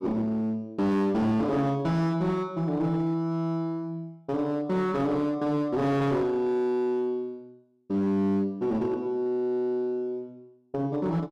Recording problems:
distorted audio; hard clipping, uneven, signal-to-distortion ratio 11 dB

